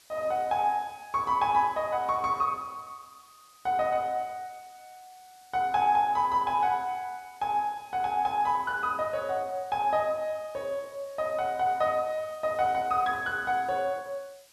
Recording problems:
hiss; slope +1 dB per octave, SNR 27 dB

